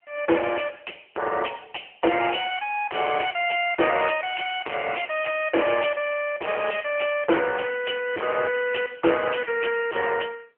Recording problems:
phone line; 300 Hz to 3.1 kHz, AMR-NB
distorted audio; hard clipping, uneven, signal-to-distortion ratio 5 dB

